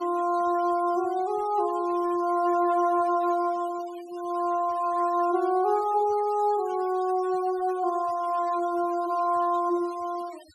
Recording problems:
denoising artefacts; signal-to-artefact ratio 23 dB

